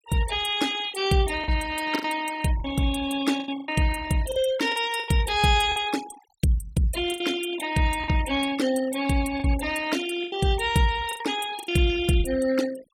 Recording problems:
denoising artefacts; signal-to-artefact ratio 14 dB
lost packets; 8% of the sound replaced, filled with the last packet

